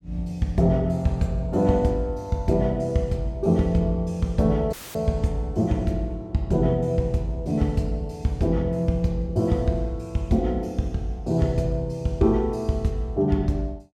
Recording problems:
audio cutting out; at 4.5 s; filled with static

